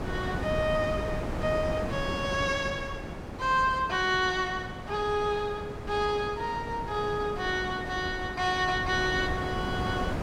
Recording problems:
wind noise; below 610 Hz, SNR 7 dB

